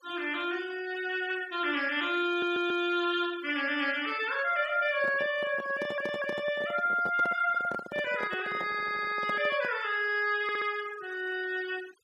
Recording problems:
noise reduction artefacts; signal-to-artefact ratio 18 dB
audio stuttering; 4 times, first at 2.5 s
handling noise; from 5 to 10 s; peak -5 dB vs average level

